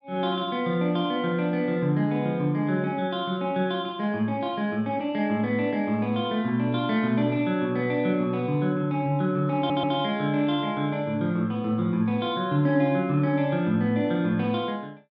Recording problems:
audio stuttering; at 9.5 s

